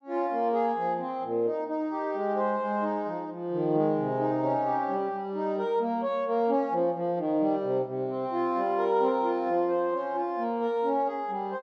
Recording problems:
treble missing; nothing above 7.9 kHz

